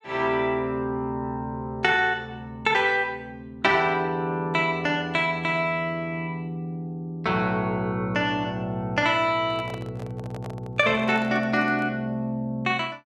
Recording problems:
handling noise; from 9.5 to 12 s; peak -9 dB vs average level

